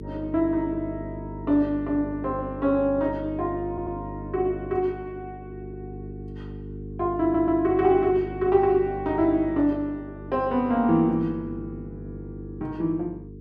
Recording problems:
hum; 50 Hz, harmonics up to 450 Hz, SNR 13 dB
audio stuttering; at 3.5 s and at 7 s

